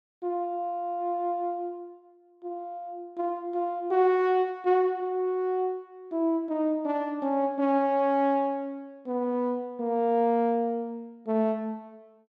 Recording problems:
none

